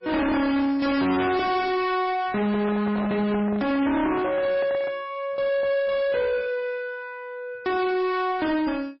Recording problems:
codec artefacts; MP3, log-spectral distance 2 dB, nothing above 5.3 kHz
distorted audio; soft clipping, signal-to-distortion ratio 5 dB
handling noise; from 2.5 to 5 s; peak -4 dB vs average level

